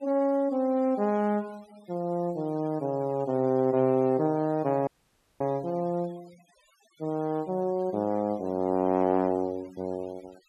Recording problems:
noise reduction artefacts; signal-to-artefact ratio 27 dB
audio cutting out; at 5 s for 0.5 s

